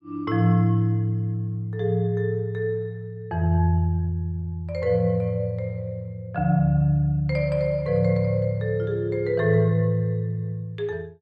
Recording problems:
none

